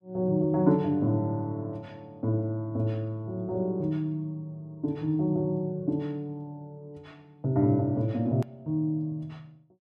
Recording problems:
click at an edit; at 8.5 s

